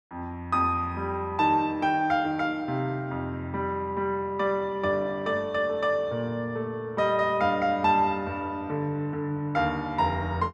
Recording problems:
none

